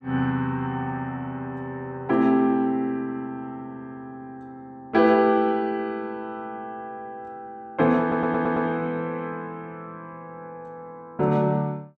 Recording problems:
stutter; at 8 s

